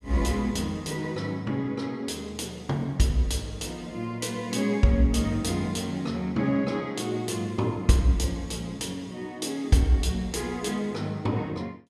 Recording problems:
none

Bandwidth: 13.5 kHz